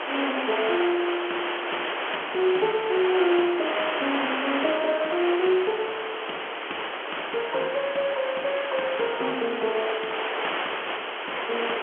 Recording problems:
phone line; 280 Hz to 3.3 kHz, G.711
background hiss; SNR 2 dB

